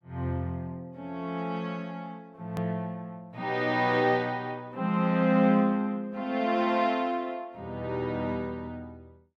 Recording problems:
edit click; at 2.5 s

